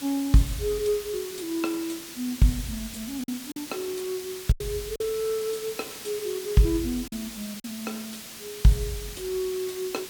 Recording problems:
background hiss; SNR 10 dB
packet loss; 3% of the sound replaced, filled with silence

